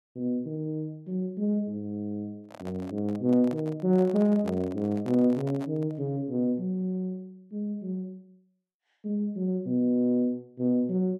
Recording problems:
handling noise; from 2.5 to 6 s; peak -7 dB vs average level

